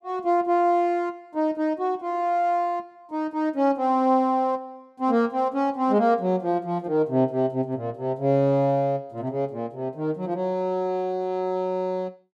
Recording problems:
none

